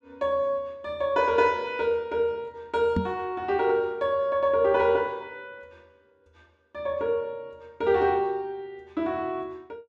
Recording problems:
knock on the microphone; at 3 s; peak +3 dB vs average level

